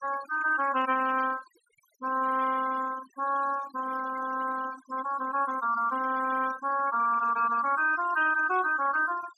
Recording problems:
noise reduction artefacts; signal-to-artefact ratio 16 dB

